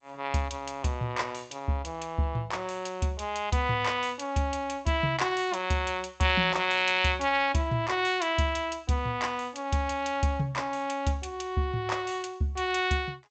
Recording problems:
lossy compression; G.722, log-spectral distance 3 dB, nothing above 7.6 kHz

